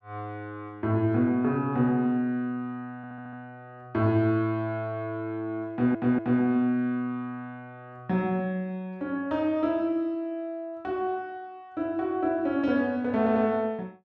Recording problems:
audio stuttering; at 3 s, at 5.5 s and at 13 s

